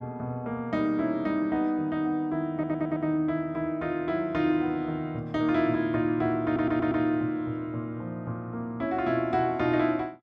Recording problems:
stutter; at 2.5 s and at 6.5 s

